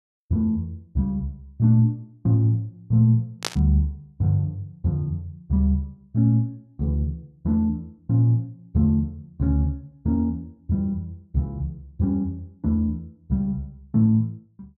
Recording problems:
static burst; at 3.5 s; peak +3 dB vs average level

